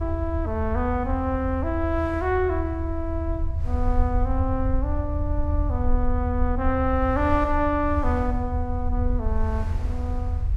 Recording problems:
low-frequency rumble; below 80 Hz, SNR 1 dB
wind on the microphone; below 1 kHz, SNR 21 dB

